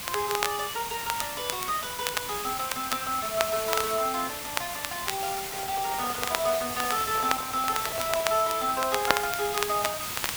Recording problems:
hiss; slope 0 dB per octave, SNR 4 dB
crackle; vinyl, SNR 5 dB
handling noise; from 5.5 to 8.5 s; peak -6 dB vs average level

